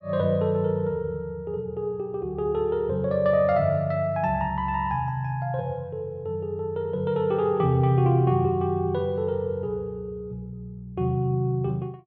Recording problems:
none

